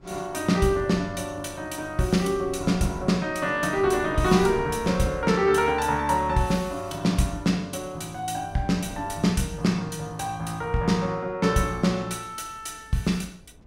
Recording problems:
wind on the microphone; below 300 Hz, SNR 20 dB

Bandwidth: 16.5 kHz